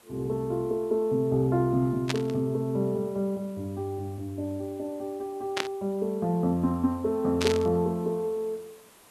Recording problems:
hiss; slope -3 dB per octave, SNR 27 dB
burst of static; at 2 s, at 5.5 s and at 7.5 s; peak +4 dB vs average level

